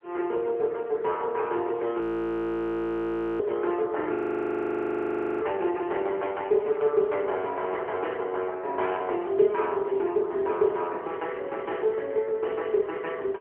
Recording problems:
phone line; 300 Hz to 3.5 kHz, AMR-NB
frozen audio; at 2 s for 1.5 s and at 4 s for 1.5 s

